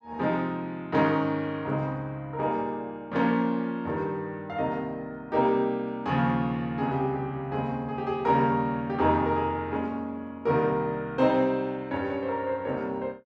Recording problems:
none

